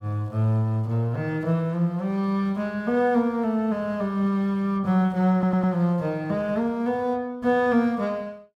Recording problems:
audio stuttering; at 5.5 s

